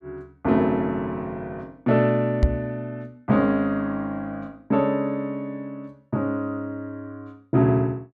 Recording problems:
knock on the microphone; at 2.5 s; peak +9 dB vs average level

